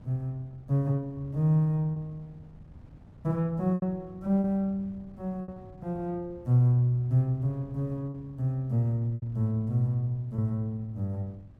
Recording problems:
wind on the microphone; below 180 Hz, SNR 22 dB
packet loss; 4% of the sound replaced, filled with repeated pitch periods

